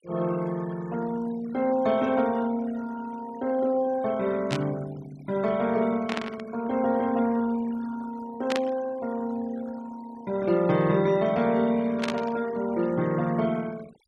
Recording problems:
denoising artefacts; signal-to-artefact ratio 20 dB
burst of static; 4 times, first at 4.5 s; peak 0 dB vs average level

